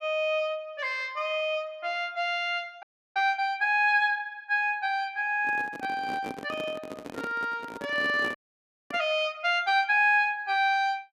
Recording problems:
frozen audio; at 3 s and at 8.5 s for 0.5 s
microphone handling noise; from 5.5 to 9 s; peak -6 dB vs average level

